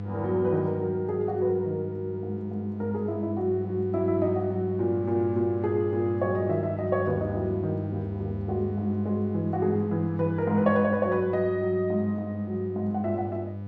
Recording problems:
hum; 50 Hz, harmonics up to 700 Hz, SNR 8 dB

